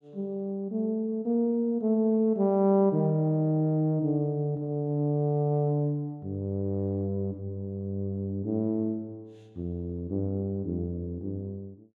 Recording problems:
none

